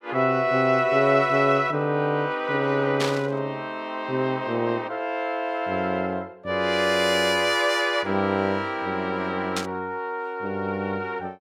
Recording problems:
static burst; at 3 s and at 9.5 s; peak 0 dB vs average level

